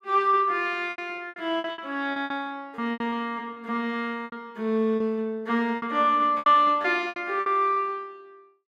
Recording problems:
packet loss; 12% of the sound replaced, filled with repeated pitch periods

